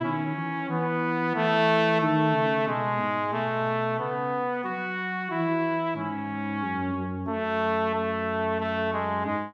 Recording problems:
none

